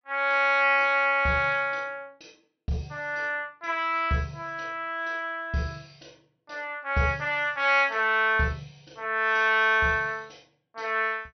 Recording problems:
low-pass filter; nothing above 6 kHz

